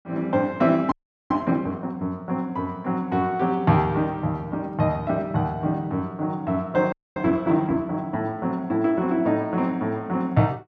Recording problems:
audio freezing; at 1 s and at 7 s

